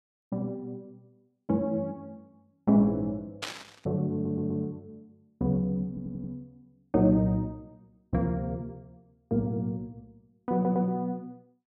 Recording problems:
static burst; at 3.5 s; peak -1 dB vs average level
stutter; at 4 s, at 6 s and at 11 s

